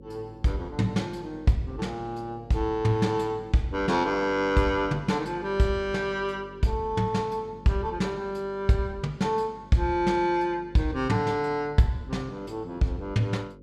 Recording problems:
hum; 50 Hz, harmonics up to 550 Hz, SNR 20 dB

